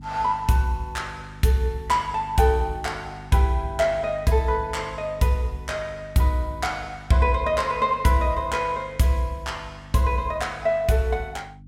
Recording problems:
mains hum; 50 Hz, harmonics up to 300 Hz, SNR 19 dB

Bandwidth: 16.5 kHz